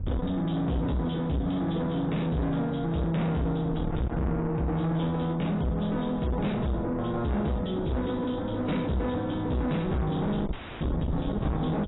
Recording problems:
lossy compression; AAC, log-spectral distance 4 dB, nothing above 3.8 kHz
distortion; soft clipping, signal-to-distortion ratio 6 dB
wind noise; below 200 Hz, SNR 10 dB
dropout; at 11 s

